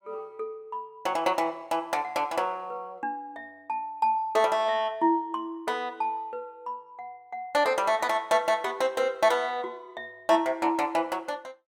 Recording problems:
none

